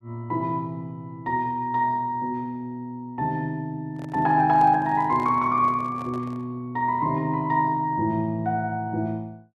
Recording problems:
microphone handling noise; from 4 to 6.5 s; peak -11 dB vs average level

